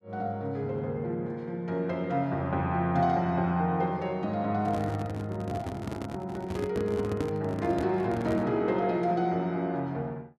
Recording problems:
handling noise; from 4.5 to 8.5 s; peak 0 dB vs average level

